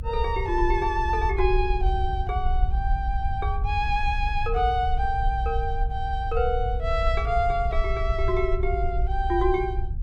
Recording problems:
low-frequency rumble; below 60 Hz, SNR 2 dB

